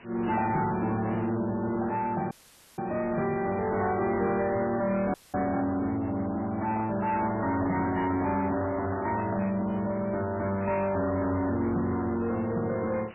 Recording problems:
lossy compression; MP3, log-spectral distance 5 dB, nothing above 2.7 kHz
distortion; soft clipping, signal-to-distortion ratio 10 dB
background hiss; SNR 23 dB
dropout; at 2.5 s and at 5 s
handling noise; from 6.5 to 9.5 s; peak -2 dB vs average level

